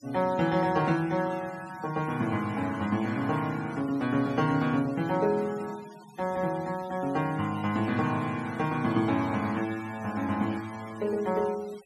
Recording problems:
denoising artefacts; signal-to-artefact ratio 19 dB

